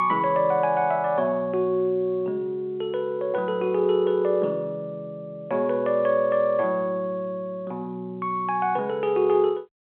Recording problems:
phone line; 260 Hz to 3.3 kHz, G.711

